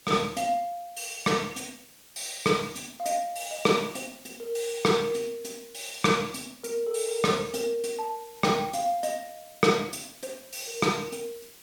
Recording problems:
background hiss; slope 0 dB per octave, SNR 22 dB

